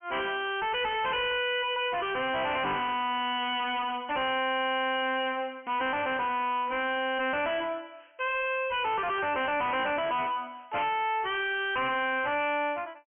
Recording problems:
treble missing; nothing above 3.1 kHz
distorted audio; soft clipping, signal-to-distortion ratio 5 dB

